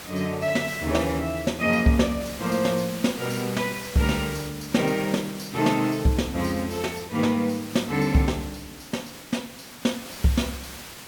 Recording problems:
background hiss; slope -1 dB per octave, SNR 13 dB

